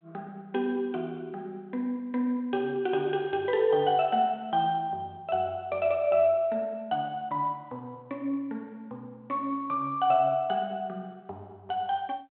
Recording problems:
telephone audio; 220 Hz to 3.7 kHz, G.726

